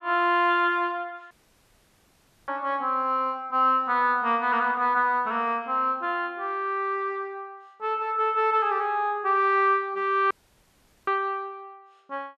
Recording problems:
audio cutting out; at 1.5 s for 1 s and at 10 s for 1 s

